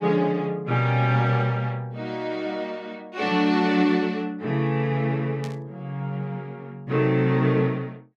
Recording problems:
static burst; at 5.5 s; peak -12 dB vs average level

